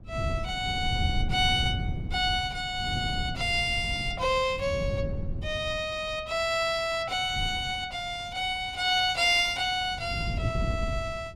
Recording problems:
wind noise; below 140 Hz, SNR 7 dB

